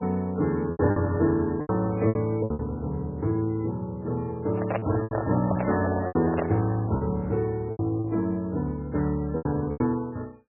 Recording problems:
lossy compression; MP3, log-spectral distance 2 dB, nothing above 2.4 kHz
packet loss; 9% of the sound replaced, filled with repeated pitch periods
handling noise; from 4.5 to 6.5 s; peak +3 dB vs average level

